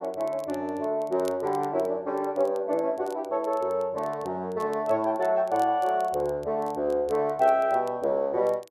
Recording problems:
crackling; vinyl, SNR 27 dB

